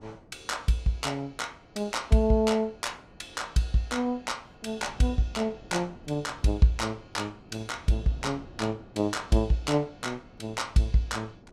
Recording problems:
wind on the microphone; below 380 Hz, SNR 23 dB

